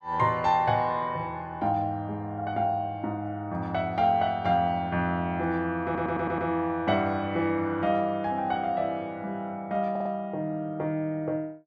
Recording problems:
audio stuttering; at 6 s and at 10 s

